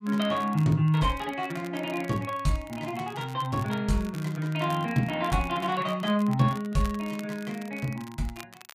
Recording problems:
crackling; vinyl, SNR 20 dB

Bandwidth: 15 kHz